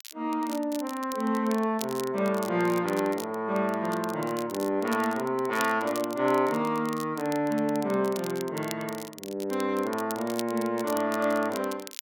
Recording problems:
crackle; vinyl, SNR 15 dB

